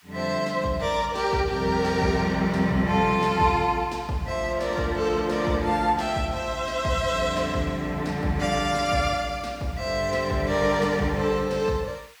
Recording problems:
background hiss; SNR 28 dB

